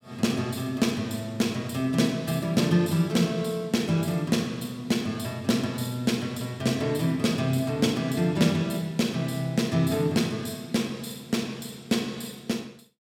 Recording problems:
none

